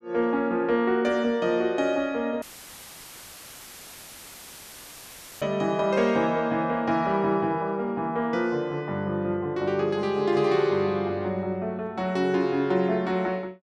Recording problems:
audio cutting out; at 2.5 s for 3 s; filled with static

